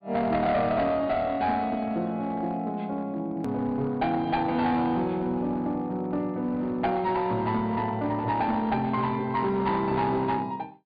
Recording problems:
low-pass filter; nothing above 4.8 kHz
distorted audio; hard clipping, uneven, signal-to-distortion ratio 11 dB
edit click; at 3.5 s

